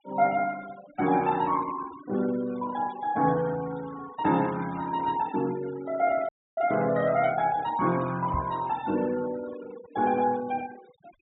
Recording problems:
low-pass filter; nothing above 4 kHz
denoising artefacts; signal-to-artefact ratio 18 dB
audio cutting out; at 6.5 s
knock on the microphone; at 8.5 s; peak -1 dB vs average level

